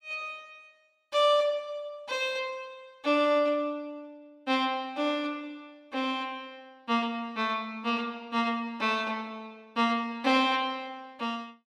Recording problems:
none

